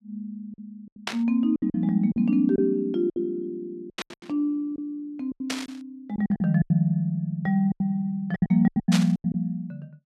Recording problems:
packet loss; 13% of the sound replaced, filled with silence
burst of static; 4 times, first at 1 s; peak +1 dB vs average level

